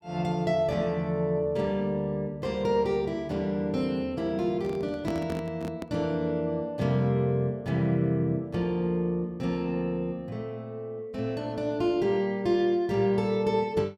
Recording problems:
handling noise; from 4.5 to 6 s; peak -2 dB vs average level

